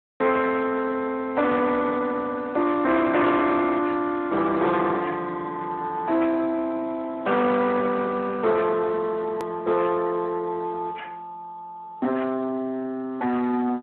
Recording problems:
telephone audio; 260 Hz to 2.8 kHz, Speex
distorted audio; soft clipping, signal-to-distortion ratio 12 dB
hard cut with a click; at 9.5 s

